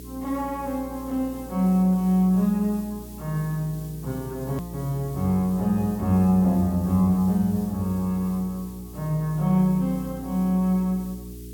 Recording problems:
hum; 60 Hz, harmonics up to 420 Hz, SNR 17 dB
background hiss; SNR 22 dB
hard cut with a click; at 4.5 s

